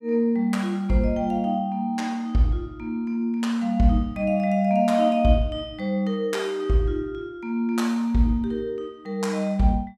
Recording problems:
none

